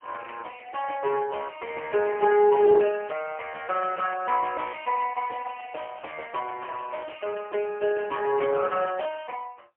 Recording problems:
telephone audio; 320 Hz to 2.8 kHz, AMR-NB, then MP3

